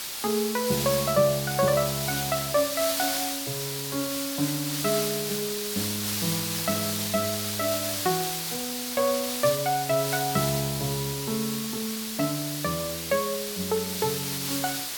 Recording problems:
background hiss; slope +2 dB per octave, SNR 1 dB

